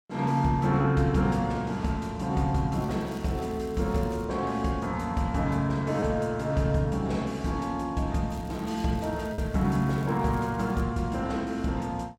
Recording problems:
packet loss; 1% of the sound replaced, filled with repeated pitch periods
crackle; from 2.5 to 4.5 s and from 8.5 to 11 s; loose cable, SNR 27 dB

